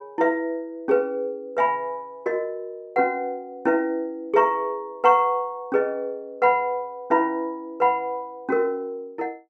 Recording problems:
none

